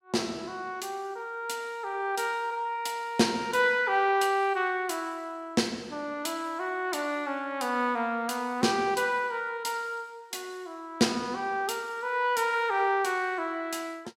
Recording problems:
none

